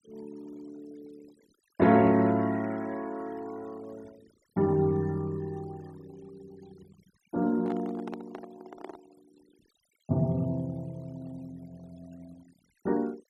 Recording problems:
denoising artefacts; signal-to-artefact ratio 26 dB
handling noise; from 7.5 to 9 s; peak -8 dB vs average level

